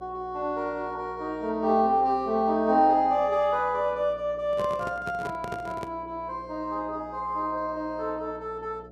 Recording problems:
hum; 60 Hz, harmonics up to 720 Hz, SNR 22 dB
handling noise; from 4.5 to 6 s; peak -5 dB vs average level

